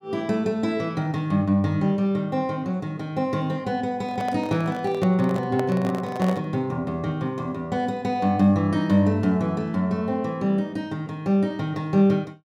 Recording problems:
microphone handling noise; from 4 to 6.5 s; peak -3 dB vs average level

